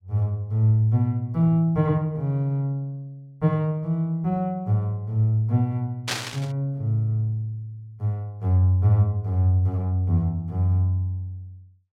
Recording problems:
burst of static; at 6 s; peak +2 dB vs average level

